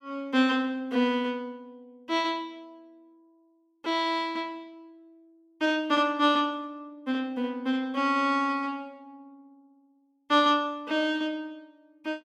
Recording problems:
none

